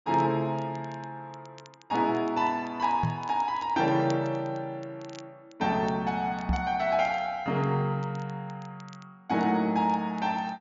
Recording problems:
treble missing; nothing above 7.2 kHz
crackle; vinyl, SNR 27 dB
microphone thump; at 3 s and at 6.5 s; peak +3 dB vs average level

